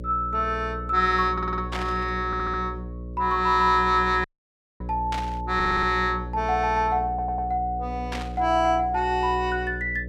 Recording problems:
electrical hum; 60 Hz, harmonics up to 600 Hz, SNR 11 dB
stutter; 4 times, first at 1.5 s
burst of static; at 1.5 s, at 5 s and at 8 s; peak -4 dB vs average level
dropout; at 4 s for 0.5 s

